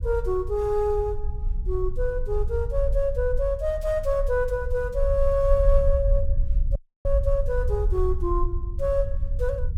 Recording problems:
rumble; below 58 Hz, SNR 2 dB
dropout; at 7 s

